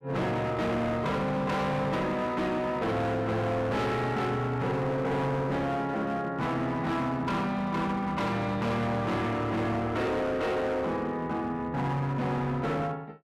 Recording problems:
distortion; hard clipping, signal-to-distortion ratio 8 dB

